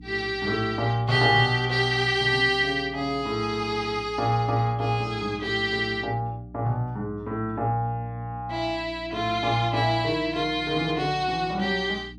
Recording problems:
hum; 60 Hz, harmonics up to 300 Hz, SNR 19 dB

